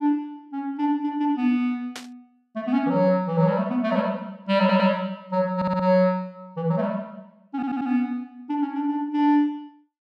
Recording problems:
static burst; at 2 s; peak -7 dB vs average level
audio stuttering; at 4.5 s, at 5.5 s and at 7.5 s

